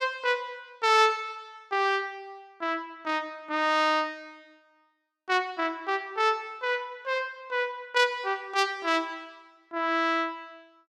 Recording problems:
none

